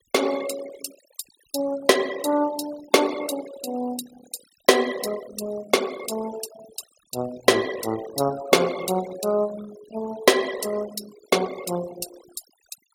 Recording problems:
denoising artefacts; signal-to-artefact ratio 14 dB

